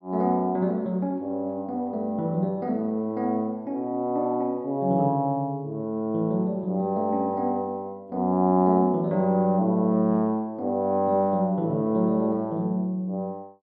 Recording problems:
none

